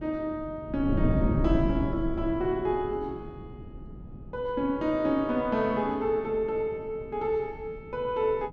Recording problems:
wind on the microphone; below 230 Hz, SNR 4 dB

